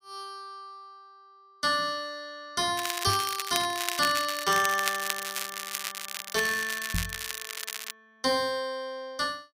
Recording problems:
crackling; from 3 to 8 s; loose cable, SNR 4 dB
microphone thump; at 3 s and at 7 s; peak +1 dB vs average level

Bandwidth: 15.5 kHz